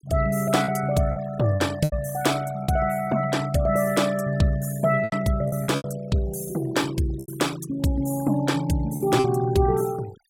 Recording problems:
noise reduction artefacts; signal-to-artefact ratio 19 dB
lost packets; 6% of the sound replaced, filled with repeated pitch periods

